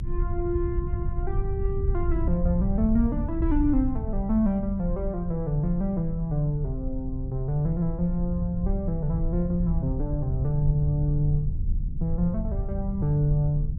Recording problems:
low-frequency rumble; below 82 Hz, SNR 3 dB

